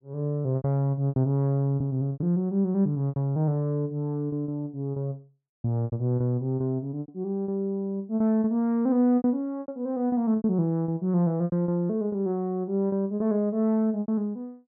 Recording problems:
lost packets; 11% of the sound replaced, filled with repeated pitch periods

